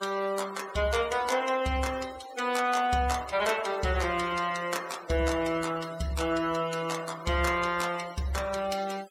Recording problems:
denoising artefacts; signal-to-artefact ratio 16 dB

